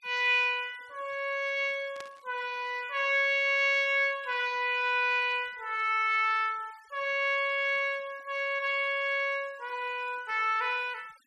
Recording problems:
denoising artefacts; signal-to-artefact ratio 27 dB
static burst; at 2 s; peak -13 dB vs average level

